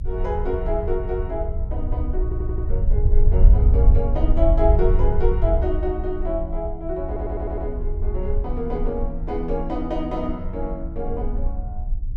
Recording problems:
low-frequency rumble; below 62 Hz, SNR -3 dB
audio stuttering; at 2 s and at 7 s

